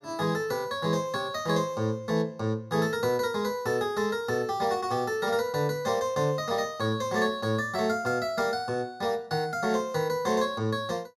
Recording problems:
none

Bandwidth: 15.5 kHz